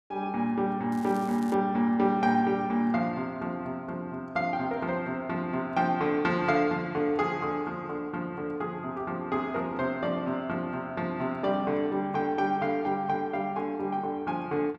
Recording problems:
crackling; at 1 s; loose cable, SNR 23 dB

